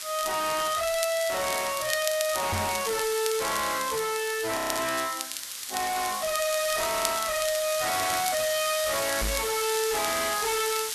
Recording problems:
distorted audio; soft clipping, signal-to-distortion ratio 6 dB
hiss; slope +4 dB per octave, SNR 5 dB
crackle; vinyl, SNR 9 dB
microphone bump; at 2.5 s and at 9 s; peak +3 dB vs average level
frozen audio; at 4.5 s

